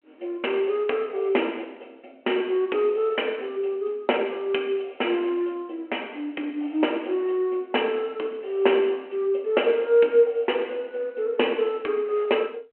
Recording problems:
phone line; 240 Hz to 3.2 kHz, G.726

